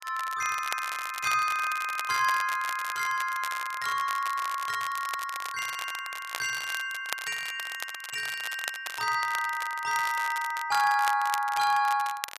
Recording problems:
crackling; vinyl, SNR 10 dB

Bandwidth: 14.5 kHz